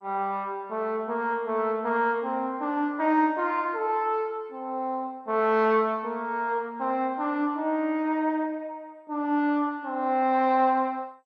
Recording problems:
lossy compression; MP2, log-spectral distance 2 dB

